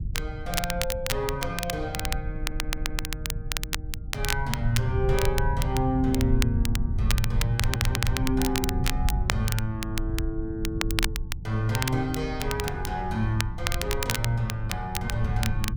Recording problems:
low-frequency rumble; below 96 Hz, SNR 2 dB
crackle; vinyl, SNR 3 dB
audio stuttering; at 2.5 s and at 7.5 s

